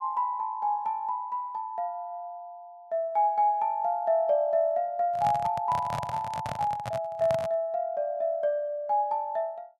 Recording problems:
handling noise; from 5 to 7.5 s; peak -3 dB vs average level

